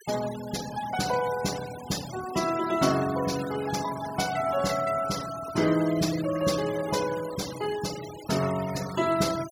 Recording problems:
denoising artefacts; signal-to-artefact ratio 12 dB

